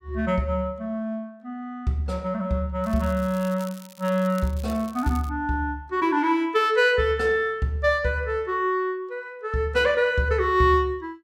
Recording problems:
crackling; from 3 to 5.5 s; loose cable, SNR 22 dB

